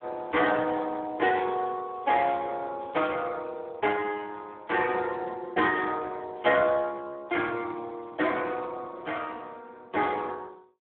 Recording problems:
phone line; 280 Hz to 3.3 kHz, Speex

